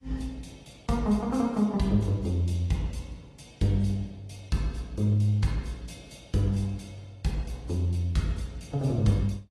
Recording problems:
lossy codec; AAC, log-spectral distance 2 dB, nothing above 12.3 kHz

